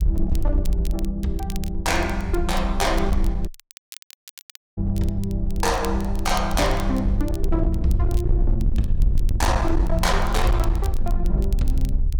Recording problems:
distortion; hard clipping, signal-to-distortion ratio 11 dB
low-frequency rumble; below 58 Hz, SNR 1 dB
crackle; vinyl, SNR 18 dB
audio cutting out; at 3.5 s for 1.5 s

